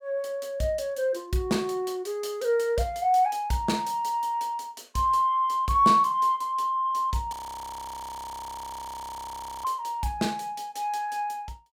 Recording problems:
audio freezing; at 7.5 s for 2.5 s

